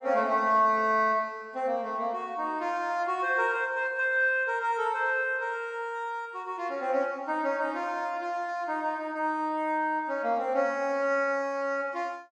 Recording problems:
none

